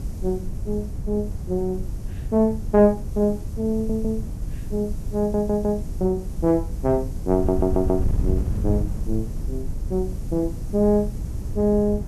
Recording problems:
background hiss; slope +4 dB per octave, SNR 27 dB
wind noise; below 110 Hz, SNR 6 dB
stutter; at 3.5 s, at 5 s and at 7.5 s

